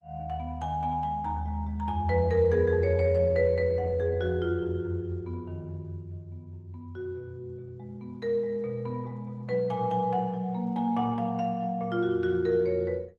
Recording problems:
codec artefacts; Opus, log-spectral distance 2 dB

